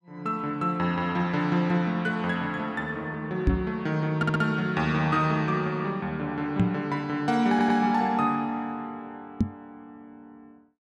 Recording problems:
microphone thump; at 3.5 s, at 6.5 s and at 9.5 s; peak +7 dB vs average level
stutter; at 4 s and at 7.5 s

